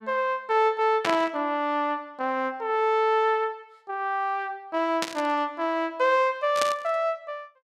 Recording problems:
static burst; at 1 s, at 5 s and at 6.5 s; peak +2 dB vs average level

